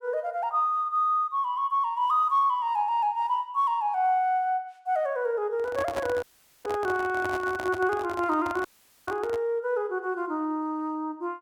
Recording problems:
handling noise; from 5.5 to 9.5 s; peak -2 dB vs average level
dropout; at 6 s and at 8.5 s

